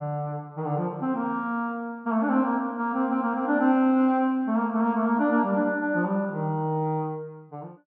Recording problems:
none

